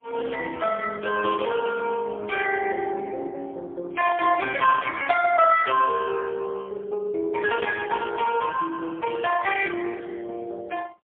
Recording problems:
telephone audio; 300 Hz to 2.6 kHz, AMR-NB, then MP3

